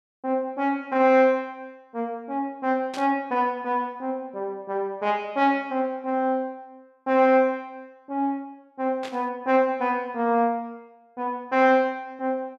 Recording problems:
static burst; at 3 s and at 9 s; peak -9 dB vs average level

